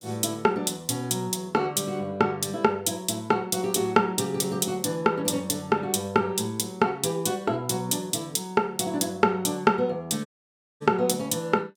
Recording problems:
dropout; at 10 s for 0.5 s

